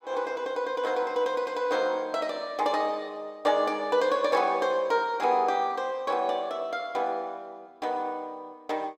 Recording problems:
none

